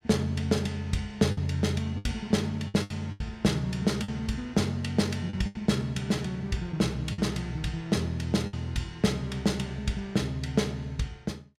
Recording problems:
packet loss; 5% of the sound replaced, filled with the last packet

